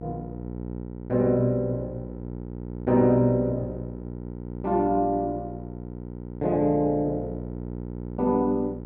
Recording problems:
electrical hum; 60 Hz, harmonics up to 960 Hz, SNR 11 dB

